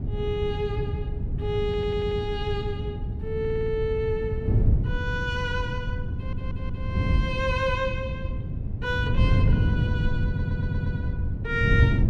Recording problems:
wind noise; below 140 Hz, SNR -2 dB
stutter; 4 times, first at 1.5 s

